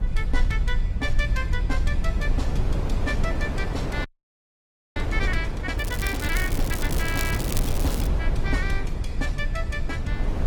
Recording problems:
codec artefacts; Opus, log-spectral distance 2 dB, nothing above 18.9 kHz
low-frequency rumble; below 66 Hz, SNR -3 dB
wind noise; below 660 Hz, SNR 3 dB
audio freezing; at 4 s for 1 s
crackling; from 6 to 8 s; loose cable, SNR 4 dB

